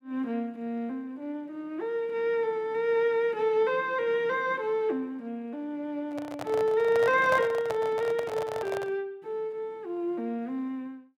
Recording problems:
microphone handling noise; from 6 to 9 s; peak +1 dB vs average level

